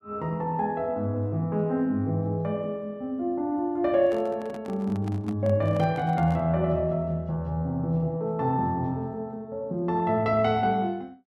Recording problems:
microphone handling noise; from 4 to 6.5 s; peak -11 dB vs average level

